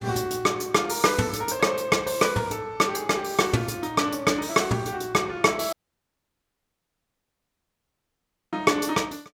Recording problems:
audio cutting out; at 5.5 s for 3 s

